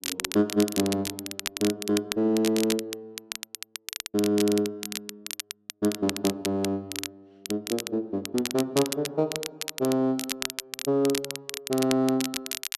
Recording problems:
crackling; vinyl, SNR 7 dB

